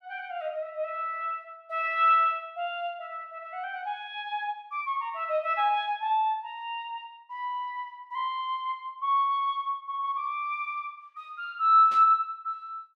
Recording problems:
burst of static; at 12 s; peak -12 dB vs average level

